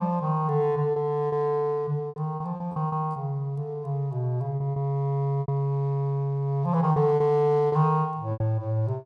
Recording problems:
packet loss; 8% of the sound replaced, filled with repeated pitch periods

